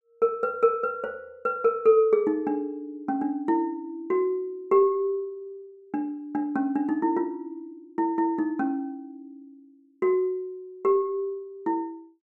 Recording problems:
none

